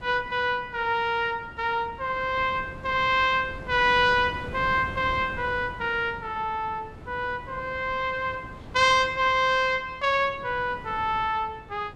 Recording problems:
wind noise; below 450 Hz, SNR 17 dB

